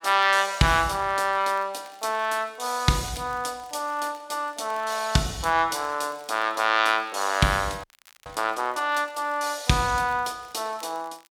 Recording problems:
crackle; vinyl, SNR 29 dB
frozen audio; at 8 s

